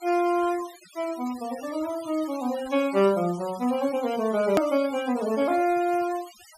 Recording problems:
noise reduction artefacts; signal-to-artefact ratio 18 dB
hard cut with a click; at 4.5 s

